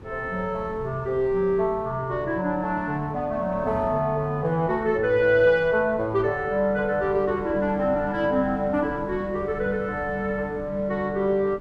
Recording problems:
wind noise; below 320 Hz, SNR 17 dB

